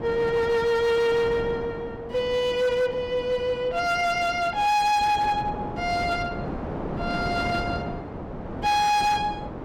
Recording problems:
distortion; hard clipping, signal-to-distortion ratio 12 dB
wind on the microphone; below 660 Hz, SNR 10 dB

